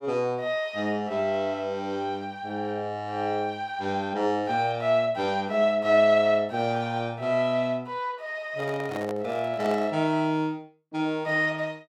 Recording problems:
microphone handling noise; from 8.5 to 10 s; peak -5 dB vs average level

